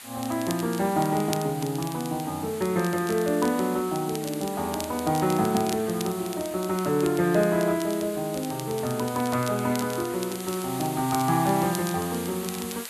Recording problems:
hiss; SNR 13 dB
crackle; vinyl, SNR 15 dB

